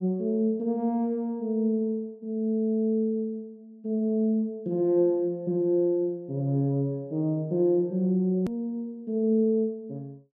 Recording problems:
edit click; at 8.5 s

